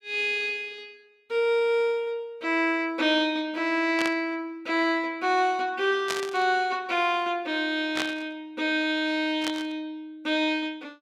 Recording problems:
static burst; 4 times, first at 4 s; peak 0 dB vs average level

